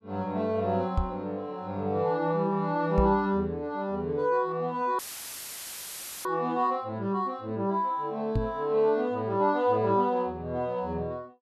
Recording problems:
microphone thump; at 1 s, at 3 s and at 8.5 s; peak +4 dB vs average level
dropout; at 5 s for 1.5 s; filled with static

